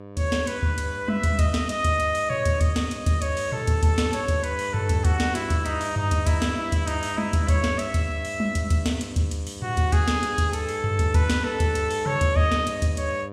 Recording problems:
electrical hum; 50 Hz, harmonics up to 1.7 kHz, SNR 15 dB

